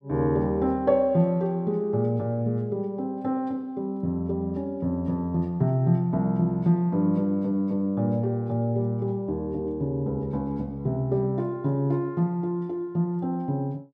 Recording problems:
none

